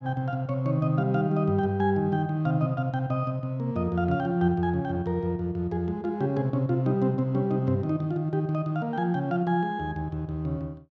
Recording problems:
none

